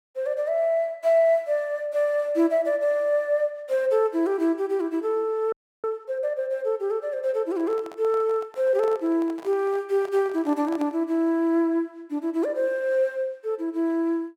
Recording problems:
audio freezing; at 5.5 s
microphone handling noise; from 7.5 to 11 s; peak -10 dB vs average level

